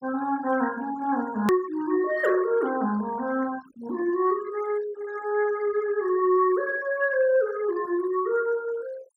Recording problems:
denoising artefacts; signal-to-artefact ratio 19 dB
click at an edit; at 1.5 s

